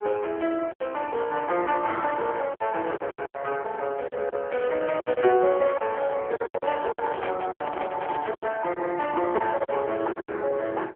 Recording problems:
telephone audio; 320 Hz to 3.3 kHz, AMR-NB
lost packets; 10% of the sound replaced, filled with silence
microphone handling noise; from 6.5 to 8.5 s; peak -1 dB vs average level

